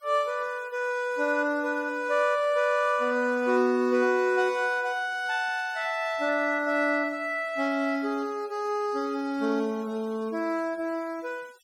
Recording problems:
noise reduction artefacts; signal-to-artefact ratio 27 dB

